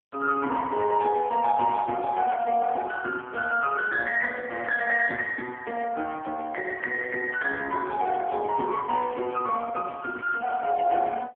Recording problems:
telephone audio; 260 Hz to 3.3 kHz, AMR-NB

